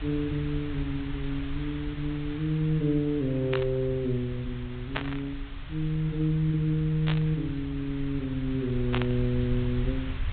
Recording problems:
low-pass filter; nothing above 4 kHz
lossy codec; MP3, log-spectral distance 6 dB
background hiss; SNR 17 dB
rumble; below 78 Hz, SNR 11 dB
static burst; 4 times, first at 3.5 s; peak +3 dB vs average level

